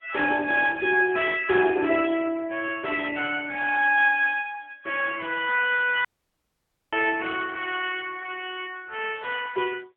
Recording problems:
phone line; 340 Hz to 3.3 kHz, AMR-NB
audio cutting out; at 6 s for 1 s

